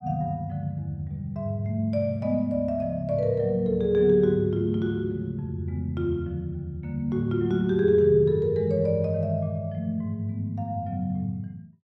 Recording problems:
none

